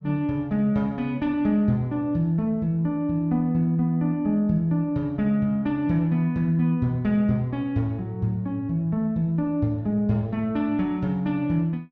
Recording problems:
none

